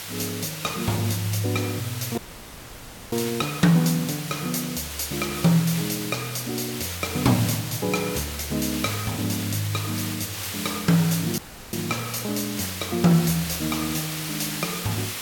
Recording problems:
background hiss; slope 0 dB per octave, SNR 6 dB
dropout; at 2 s for 1 s and at 11 s

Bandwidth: 17 kHz